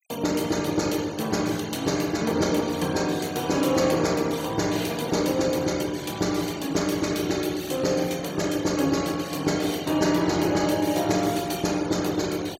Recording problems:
denoising artefacts; signal-to-artefact ratio 18 dB

